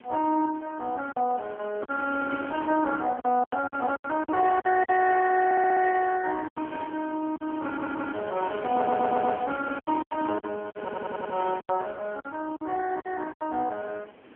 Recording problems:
phone line; 240 Hz to 3.3 kHz, AMR-NB
wind on the microphone; below 870 Hz, SNR 14 dB
packet loss; 9% of the sound replaced, filled with silence
stutter; 4 times, first at 5.5 s

